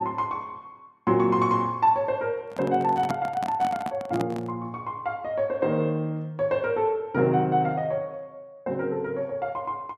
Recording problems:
microphone handling noise; from 2.5 to 4.5 s; peak 0 dB vs average level

